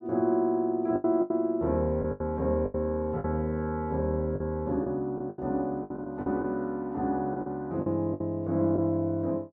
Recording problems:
lost packets; 9% of the sound replaced, filled with the last packet

